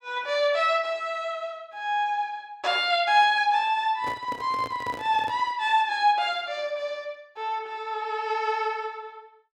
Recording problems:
handling noise; from 4 to 5.5 s; peak -8 dB vs average level

